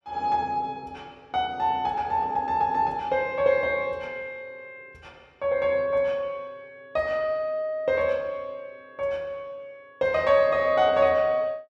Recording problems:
none

